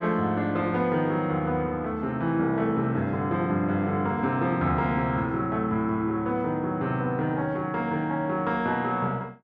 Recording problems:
none

